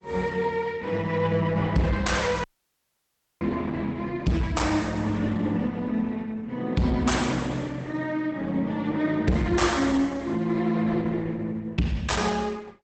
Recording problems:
lossy compression; Opus, log-spectral distance 3 dB, nothing above 8 kHz
distorted audio; soft clipping, signal-to-distortion ratio 11 dB
dropout; at 2.5 s for 1 s

